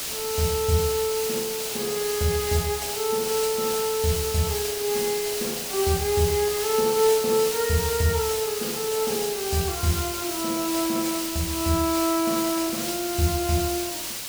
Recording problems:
background hiss; slope +1 dB per octave, SNR 3 dB

